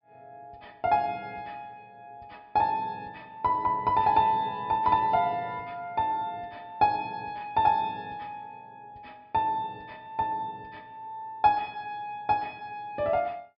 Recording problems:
treble cut off; nothing above 5.5 kHz

